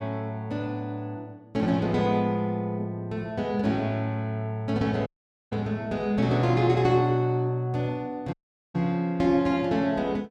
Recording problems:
dropout; at 5 s and at 8.5 s

